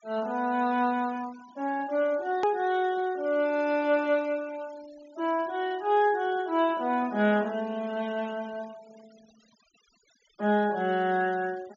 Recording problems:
treble missing; nothing above 7.2 kHz
noise reduction artefacts; signal-to-artefact ratio 24 dB
edit click; at 2.5 s

